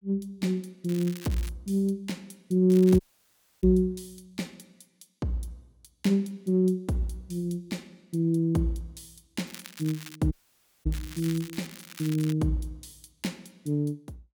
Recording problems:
crackle; 4 times, first at 1 s; loose cable, SNR 16 dB
dropout; at 3 s for 0.5 s and at 10 s for 0.5 s

